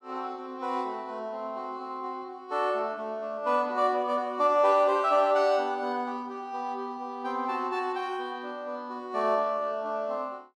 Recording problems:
none

